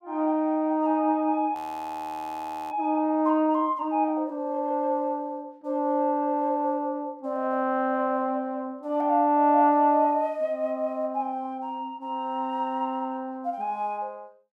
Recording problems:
audio freezing; at 1.5 s for 1 s

